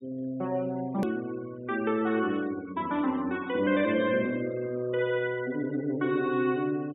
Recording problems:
low-pass filter; nothing above 4 kHz
denoising artefacts; signal-to-artefact ratio 22 dB
hard cut with a click; at 1 s

